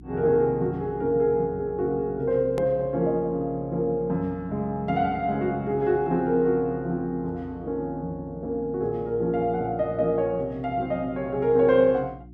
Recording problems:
hum; 60 Hz, harmonics up to 360 Hz, SNR 20 dB
hard cut with a click; at 2.5 s

